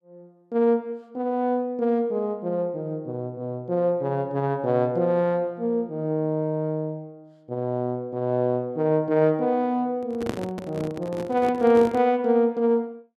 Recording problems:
microphone handling noise; from 10 to 12 s; peak -1 dB vs average level

